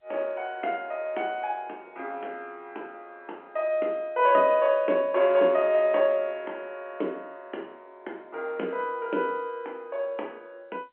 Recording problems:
phone line; 280 Hz to 3.4 kHz, G.711

